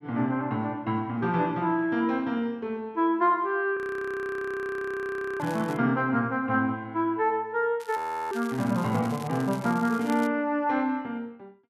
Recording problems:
audio freezing; at 4 s for 1.5 s and at 8 s
crackling; at 5.5 s and from 8 to 10 s; loose cable, SNR 20 dB

